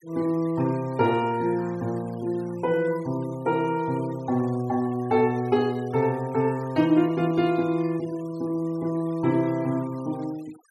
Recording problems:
denoising artefacts; signal-to-artefact ratio 24 dB

